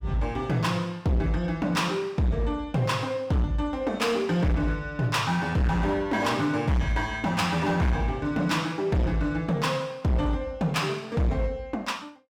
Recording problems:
distorted audio; hard clipping, signal-to-distortion ratio 8 dB

